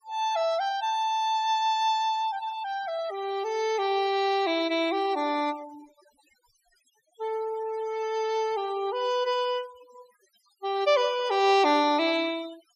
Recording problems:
denoising artefacts; signal-to-artefact ratio 18 dB

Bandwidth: 14.5 kHz